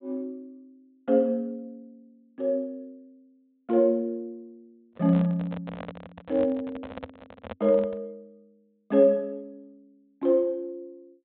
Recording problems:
low-pass filter; nothing above 4 kHz
handling noise; from 5 to 8 s; peak -7 dB vs average level

